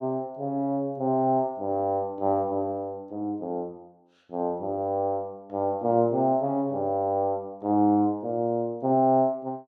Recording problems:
none

